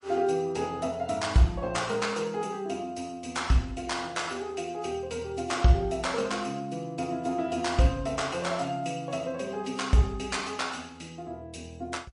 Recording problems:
lossy compression; MP3, log-spectral distance 3 dB, nothing above 10.4 kHz

